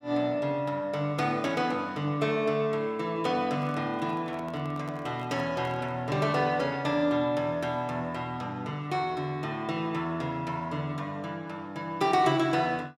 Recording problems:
microphone handling noise; from 3.5 to 6 s; peak -10 dB vs average level

